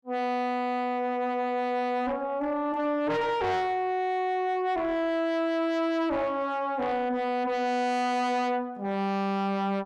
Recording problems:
distortion; soft clipping, signal-to-distortion ratio 7 dB

